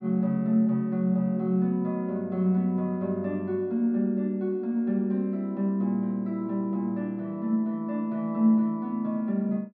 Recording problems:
none

